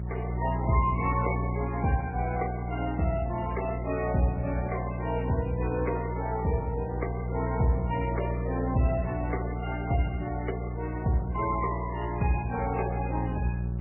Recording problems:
lossy compression; MP3, then Vorbis, log-spectral distance 4 dB, nothing above 2.5 kHz
hum; 60 Hz, harmonics up to 540 Hz, SNR 2 dB

